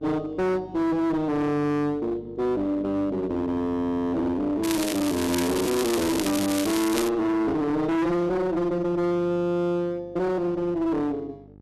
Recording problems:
distortion; hard clipping, uneven, signal-to-distortion ratio 6 dB
hum; 50 Hz, harmonics up to 850 Hz, SNR 23 dB
crackling; from 4.5 to 7 s; loose cable, SNR 7 dB

